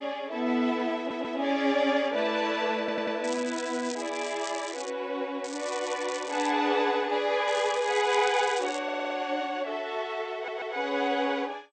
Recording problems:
lossy codec; MP2, log-spectral distance 6 dB, nothing above 7.1 kHz
stutter; 4 times, first at 1 s
crackling; from 3 to 5 s, from 5.5 to 6.5 s and from 7.5 to 9 s; loose cable, SNR 14 dB

